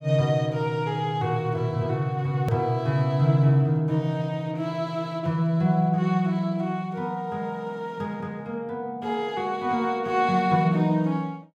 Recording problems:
hard cut with a click; at 2.5 s

